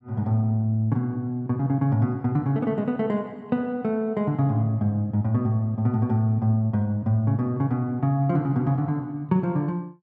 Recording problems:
none

